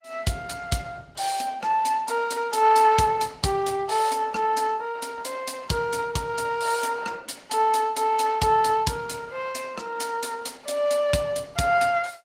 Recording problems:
codec artefacts; Opus, log-spectral distance 4 dB, nothing above 16 kHz

